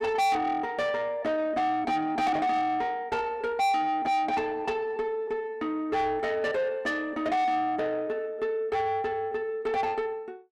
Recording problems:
distorted audio; soft clipping, signal-to-distortion ratio 6 dB

